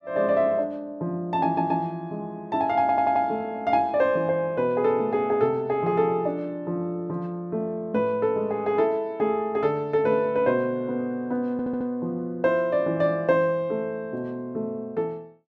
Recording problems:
audio stuttering; at 1.5 s, at 3 s and at 12 s

